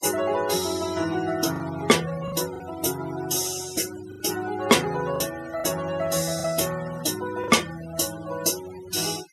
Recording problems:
denoising artefacts; signal-to-artefact ratio 15 dB
lost packets; 4% of the sound replaced, filled with the last packet

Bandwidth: 14.5 kHz